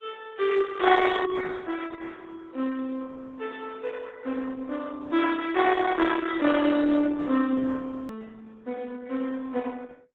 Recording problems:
lossy compression; AAC, then Opus, log-spectral distance 4 dB, nothing above 3.4 kHz
edit click; at 8 s

